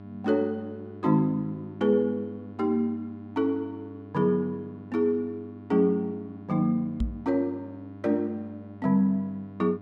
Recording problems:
hum; 50 Hz, harmonics up to 1.4 kHz, SNR 18 dB
knock on the microphone; at 7 s; peak +2 dB vs average level

